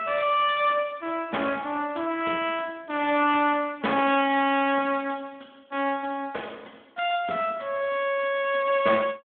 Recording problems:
telephone audio; 240 Hz to 3.5 kHz, Speex

